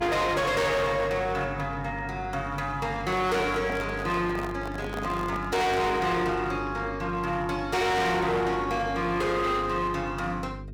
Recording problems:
distortion; hard clipping, signal-to-distortion ratio 7 dB
mains hum; 50 Hz, harmonics up to 450 Hz, SNR 13 dB
handling noise; from 3 to 6 s; peak -4 dB vs average level

